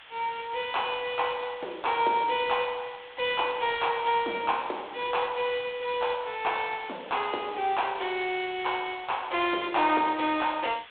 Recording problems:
telephone audio; 260 Hz to 3.7 kHz, G.726
hiss; SNR 19 dB

